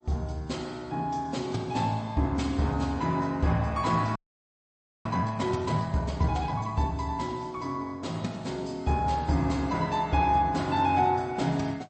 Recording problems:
lossy compression; MP3, log-spectral distance 2 dB, nothing above 8.2 kHz
audio freezing; at 4 s for 1 s

